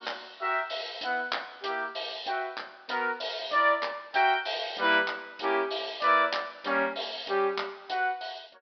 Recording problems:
treble cut off; nothing above 5.5 kHz

